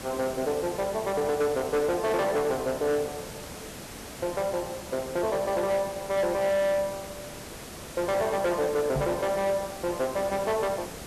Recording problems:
distortion; hard clipping, signal-to-distortion ratio 11 dB
background hiss; slope -4 dB per octave, SNR 12 dB
microphone bump; at 9 s; peak +1 dB vs average level

